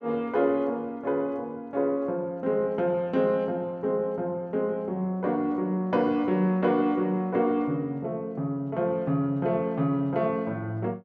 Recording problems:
none

